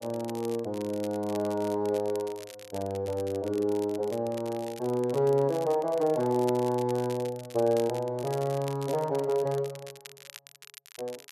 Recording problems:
crackling; vinyl, SNR 18 dB

